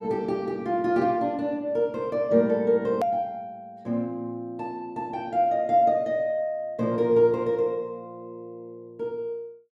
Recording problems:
click at an edit; at 3 s

